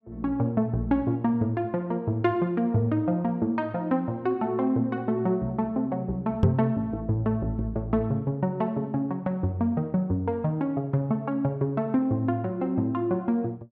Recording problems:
microphone thump; at 6.5 s; peak +9 dB vs average level

